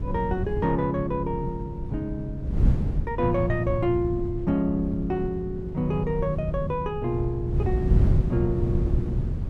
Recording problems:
electrical hum; 50 Hz, harmonics up to 550 Hz, SNR 19 dB
wind on the microphone; below 130 Hz, SNR 2 dB

